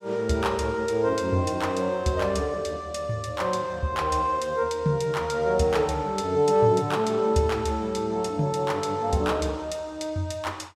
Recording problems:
none

